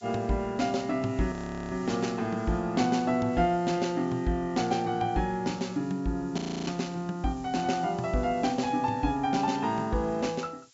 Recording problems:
treble missing; nothing above 8 kHz
background hiss; slope +4 dB per octave, SNR 27 dB
frozen audio; at 1.5 s and at 6.5 s

